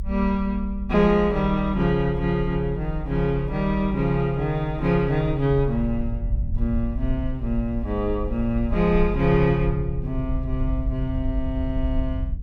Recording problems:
low-frequency rumble; below 58 Hz, SNR 7 dB

